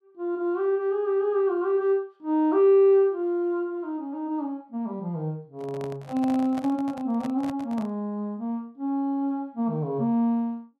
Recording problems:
handling noise; from 5.5 to 8 s; peak -9 dB vs average level

